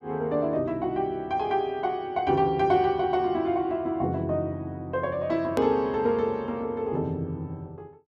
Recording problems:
hard cut with a click; at 5.5 s

